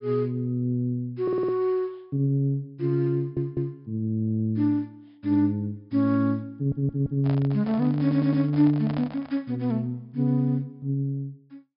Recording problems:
treble cut off; nothing above 5.5 kHz
stutter; 4 times, first at 1 s
handling noise; from 6.5 to 9.5 s; peak -7 dB vs average level

